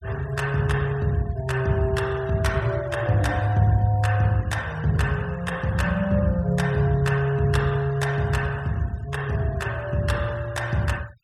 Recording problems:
denoising artefacts; signal-to-artefact ratio 23 dB

